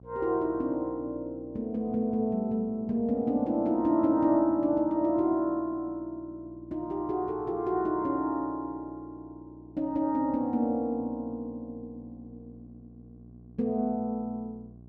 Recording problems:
hum; 60 Hz, harmonics up to 720 Hz, SNR 23 dB

